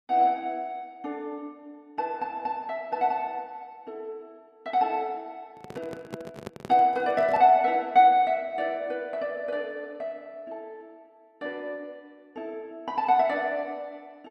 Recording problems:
microphone handling noise; from 5.5 to 7.5 s; peak -6 dB vs average level

